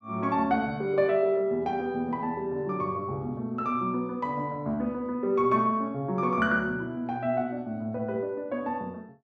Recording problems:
none

